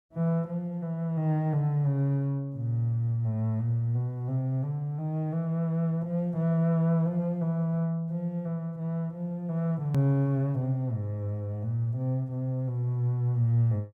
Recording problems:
edit click; at 10 s

